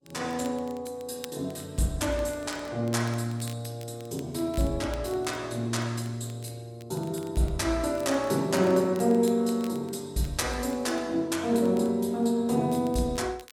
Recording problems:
lossy codec; Vorbis, log-spectral distance 3 dB, nothing above 12.7 kHz
crackling; vinyl, SNR 23 dB

